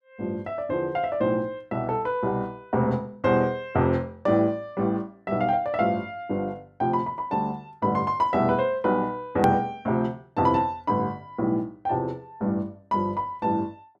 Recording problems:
edit click; at 9.5 s

